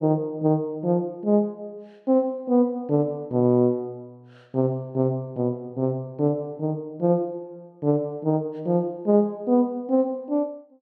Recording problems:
none

